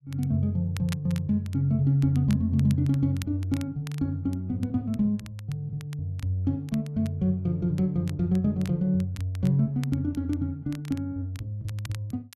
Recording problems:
crackling; vinyl, SNR 22 dB

